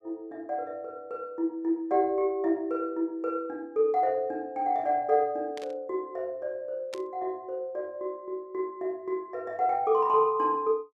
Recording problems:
static burst; at 5.5 s and at 7 s; peak -8 dB vs average level

